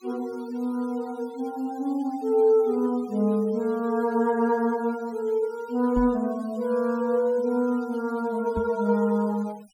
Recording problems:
denoising artefacts; signal-to-artefact ratio 27 dB
microphone bump; at 6 s and at 8.5 s; peak -2 dB vs average level

